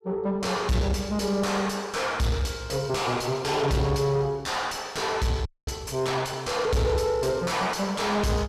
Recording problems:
distorted audio; soft clipping, signal-to-distortion ratio 5 dB
audio freezing; at 5.5 s

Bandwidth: 14.5 kHz